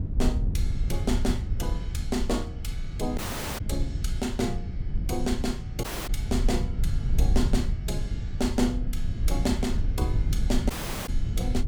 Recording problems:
low-frequency rumble; below 80 Hz, SNR -1 dB
audio cutting out; at 3 s, at 6 s and at 11 s

